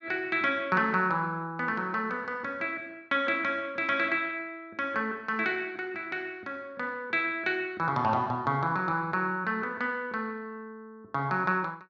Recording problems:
none

